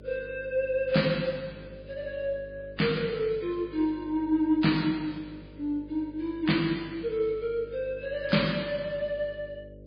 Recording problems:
lossy codec; MP3, log-spectral distance 3 dB, nothing above 4.6 kHz
hum; 50 Hz, harmonics up to 600 Hz, SNR 19 dB

